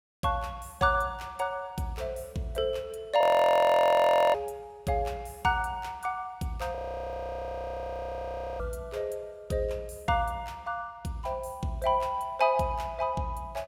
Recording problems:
audio freezing; at 3 s for 1 s and at 7 s for 2 s

